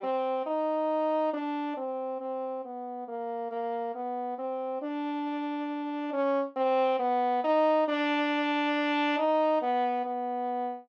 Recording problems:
none

